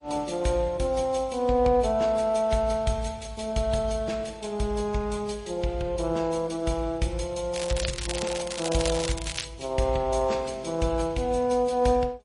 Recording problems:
lossy compression; AAC, then MP3, log-spectral distance 4 dB, nothing above 10.4 kHz
crackle; from 7.5 to 9.5 s; loose cable, SNR 7 dB

